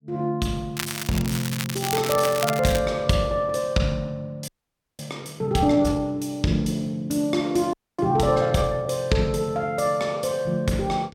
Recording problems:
crackle; from 1 to 3 s; loose cable, SNR 7 dB
audio freezing; at 4.5 s for 0.5 s and at 7.5 s

